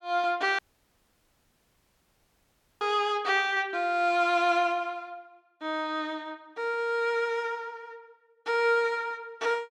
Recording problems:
audio cutting out; at 0.5 s for 2 s

